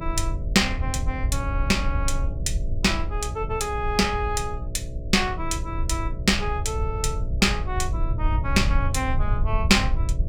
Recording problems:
mains hum; 60 Hz, harmonics up to 660 Hz, SNR 13 dB
rumble; below 80 Hz, SNR 3 dB

